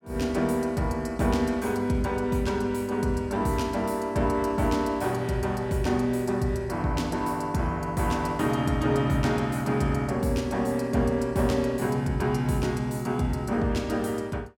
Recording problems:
none

